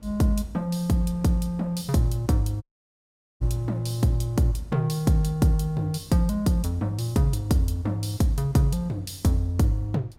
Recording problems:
wind noise; below 250 Hz, SNR 26 dB
dropout; at 2.5 s for 1 s

